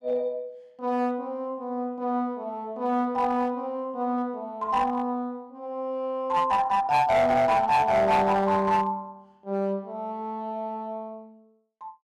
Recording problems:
distorted audio; hard clipping, uneven, signal-to-distortion ratio 10 dB

